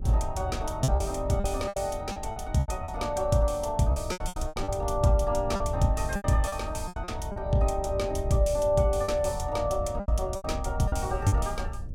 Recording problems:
mains hum; 50 Hz, harmonics up to 600 Hz, SNR 22 dB
wind on the microphone; below 96 Hz, SNR 8 dB
lost packets; 11% of the sound replaced, filled with repeated pitch periods

